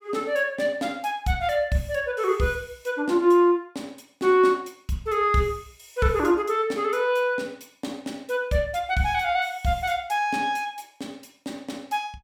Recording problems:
none

